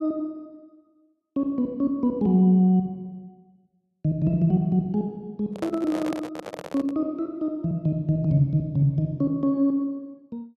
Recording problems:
microphone handling noise; from 5.5 to 7 s; peak -5 dB vs average level

